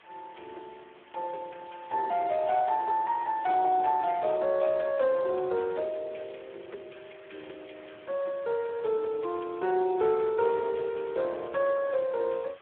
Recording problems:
phone line; 320 Hz to 2.8 kHz, Speex
hiss; SNR 26 dB

